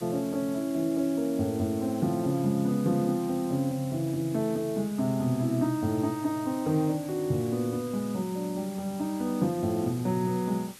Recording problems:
background hiss; slope 0 dB per octave, SNR 18 dB

